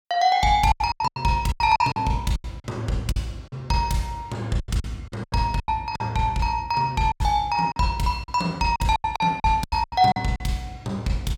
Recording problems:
lost packets; 14% of the sound replaced, filled with silence

